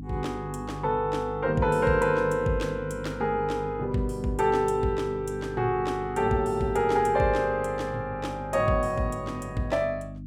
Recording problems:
hum; 50 Hz, harmonics up to 300 Hz, SNR 12 dB

